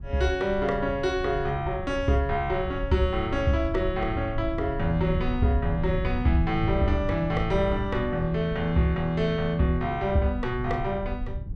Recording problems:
wind noise; below 100 Hz, SNR 8 dB

